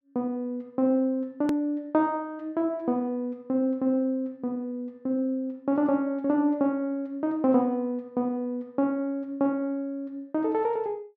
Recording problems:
edit click; at 1.5 s

